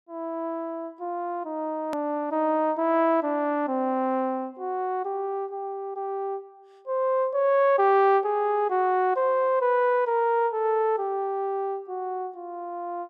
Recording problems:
click at an edit; at 2 s

